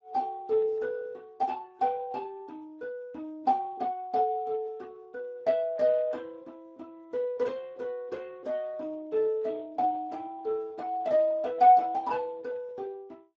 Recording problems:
codec artefacts; Speex, log-spectral distance 2 dB

